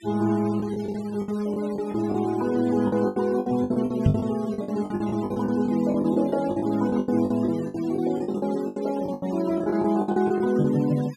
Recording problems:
denoising artefacts; signal-to-artefact ratio 19 dB
lost packets; 16% of the sound replaced, filled with the last packet
microphone thump; at 4 s; peak +8 dB vs average level

